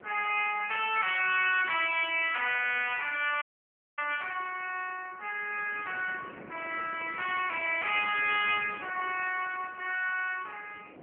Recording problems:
phone line; 390 Hz to 3.2 kHz, AMR-NB
wind noise; below 690 Hz, SNR 19 dB
audio cutting out; at 3.5 s for 0.5 s

